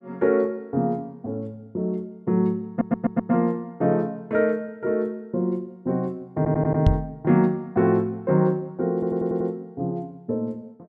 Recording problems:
stutter; at 2.5 s, at 6.5 s and at 9 s
microphone bump; at 7 s; peak +9 dB vs average level

